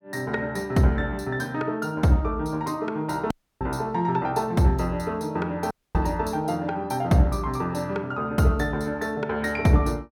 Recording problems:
audio cutting out; at 3.5 s and at 5.5 s

